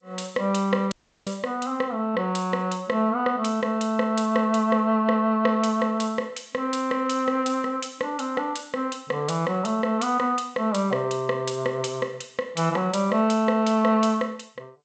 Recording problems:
codec artefacts; G.722, log-spectral distance 4 dB, nothing above 7.8 kHz
audio cutting out; at 1 s

